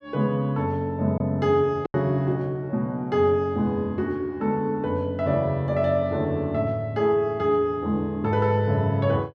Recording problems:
packet loss; 1.1% of the sound replaced, filled with silence

